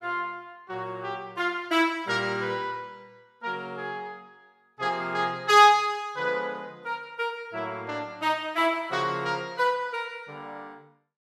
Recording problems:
none

